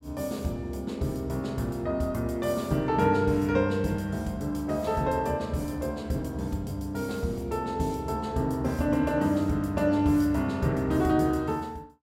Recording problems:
none

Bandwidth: 16 kHz